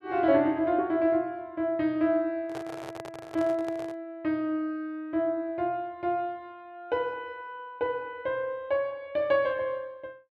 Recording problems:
microphone handling noise; from 2.5 to 4 s; peak -7 dB vs average level

